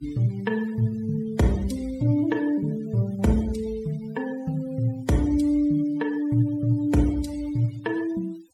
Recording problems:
noise reduction artefacts; signal-to-artefact ratio 21 dB

